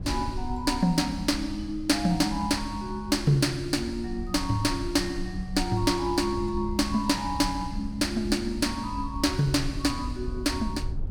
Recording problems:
low-frequency rumble; below 92 Hz, SNR 11 dB

